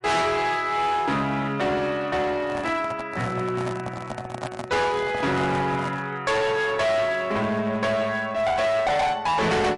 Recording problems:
lossy compression; MP3, log-spectral distance 2 dB, nothing above 11 kHz
distortion; hard clipping, uneven, signal-to-distortion ratio 6 dB
handling noise; from 2.5 to 6 s; peak -4 dB vs average level

